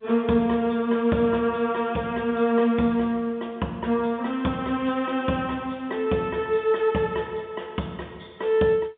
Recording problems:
phone line; 130 Hz to 3.6 kHz, G.711

